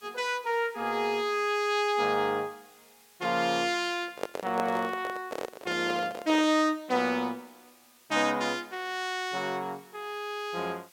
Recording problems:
background hiss; slope +2 dB per octave, SNR 27 dB
handling noise; from 4 to 6.5 s; peak +1 dB vs average level

